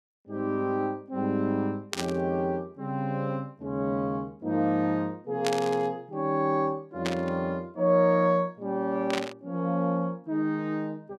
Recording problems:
static burst; 4 times, first at 2 s; peak +1 dB vs average level

